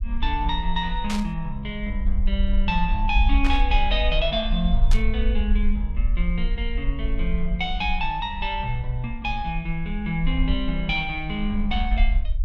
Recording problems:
low-frequency rumble; below 50 Hz, SNR 1 dB
burst of static; at 1 s, at 3.5 s and at 5 s; peak -1 dB vs average level

